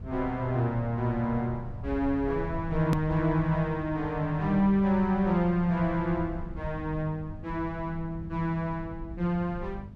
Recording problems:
hum; 50 Hz, harmonics up to 500 Hz, SNR 18 dB
low-frequency rumble; below 96 Hz, SNR 14 dB
hard cut with a click; at 3 s

